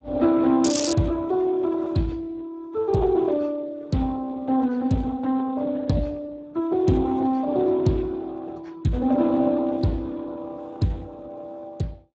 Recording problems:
lossy codec; Speex, log-spectral distance 3 dB, nothing above 7.8 kHz
crackle; at 0.5 s; loose cable, SNR 6 dB

